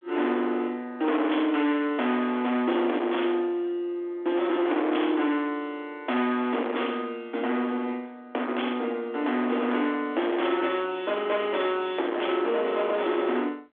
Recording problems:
phone line; 240 Hz to 3.5 kHz, G.726
distortion; hard clipping, uneven, signal-to-distortion ratio 7 dB

